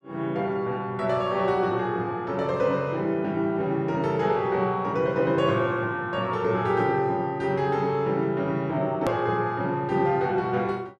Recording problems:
hard cut with a click; at 9 s

